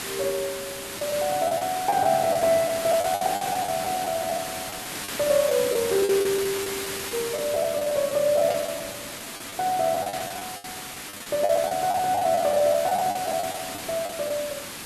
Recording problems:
background hiss; slope -2 dB per octave, SNR 8 dB
packet loss; 11% of the sound replaced, filled with the last packet
burst of static; 4 times, first at 5 s; peak -8 dB vs average level

